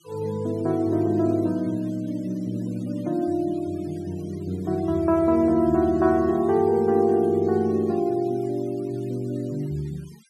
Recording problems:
denoising artefacts; signal-to-artefact ratio 27 dB

